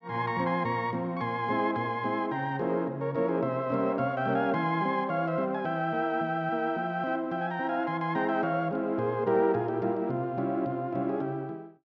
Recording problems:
treble cut off; nothing above 7.6 kHz

